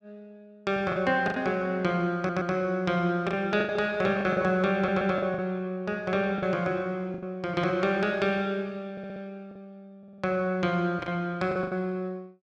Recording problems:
packet loss; 6% of the sound replaced, filled with the last packet
audio stuttering; 4 times, first at 2 s

